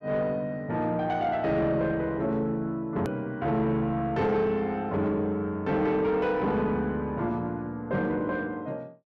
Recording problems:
distortion; soft clipping, signal-to-distortion ratio 12 dB
edit click; at 3 s

